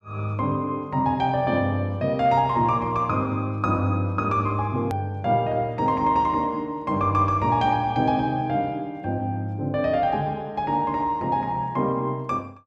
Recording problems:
hard cut with a click; at 5 s

